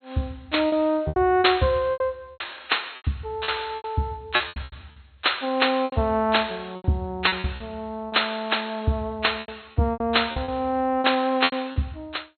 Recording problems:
treble missing; nothing above 4.3 kHz
packet loss; 12% of the sound replaced, filled with repeated pitch periods

